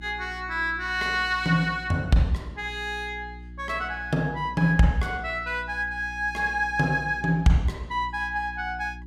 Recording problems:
electrical hum; 60 Hz, harmonics up to 360 Hz, SNR 16 dB

